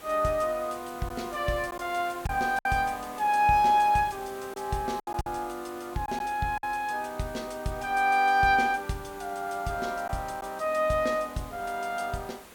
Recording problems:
background hiss; slope -4 dB per octave, SNR 19 dB
lost packets; 3% of the sound replaced, filled with silence

